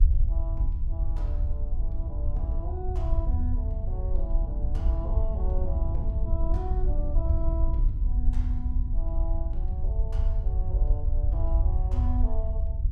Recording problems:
low-frequency rumble; below 64 Hz, SNR -12 dB
wind noise; below 170 Hz, SNR 2 dB

